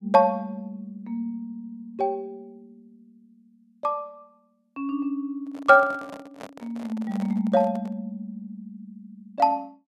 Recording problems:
microphone handling noise; from 5.5 to 8 s; peak -10 dB vs average level

